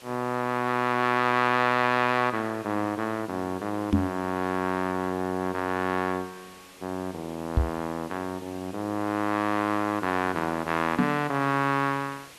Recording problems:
background hiss; slope -1 dB per octave, SNR 21 dB
microphone thump; at 4 s, at 7.5 s and at 11 s; peak +9 dB vs average level

